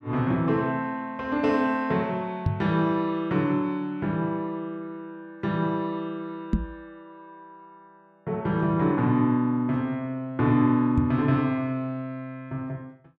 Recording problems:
microphone thump; at 2.5 s, at 6.5 s and at 11 s; peak +5 dB vs average level

